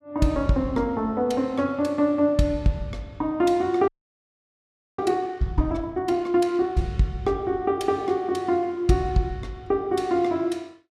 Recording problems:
audio freezing; at 4 s for 1 s

